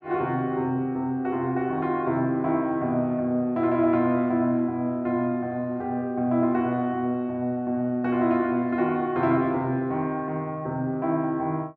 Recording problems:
none

